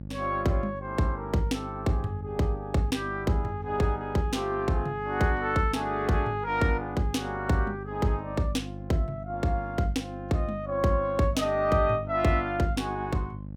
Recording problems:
hum; 50 Hz, harmonics up to 600 Hz, SNR 12 dB

